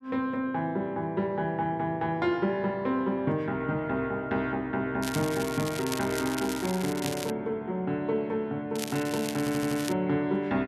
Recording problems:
crackling; from 5 to 7.5 s and from 9 to 10 s; loose cable, SNR 9 dB
stutter; at 9.5 s

